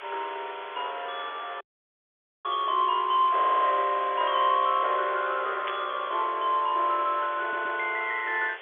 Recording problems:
telephone audio; 340 Hz to 3.5 kHz, G.711
hiss; SNR 17 dB
dropout; at 1.5 s for 1 s
stutter; at 3.5 s and at 7.5 s
burst of static; at 5.5 s; peak -4 dB vs average level

